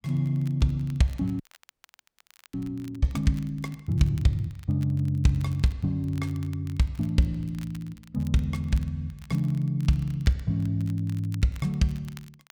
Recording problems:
crackling; vinyl, SNR 26 dB
frozen audio; at 1.5 s for 1 s

